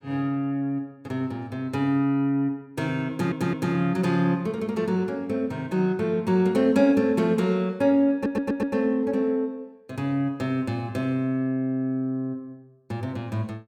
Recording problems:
audio stuttering; at 3 s and at 8 s

